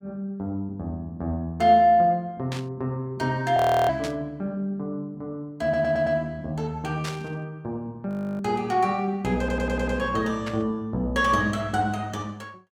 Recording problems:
static burst; 4 times, first at 2.5 s; peak -5 dB vs average level
frozen audio; at 3.5 s and at 8 s
stutter; at 5.5 s and at 9.5 s

